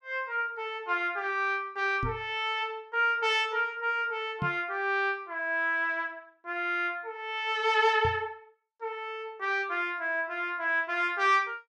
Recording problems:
microphone bump; at 2 s, at 4.5 s and at 8 s; peak -1 dB vs average level

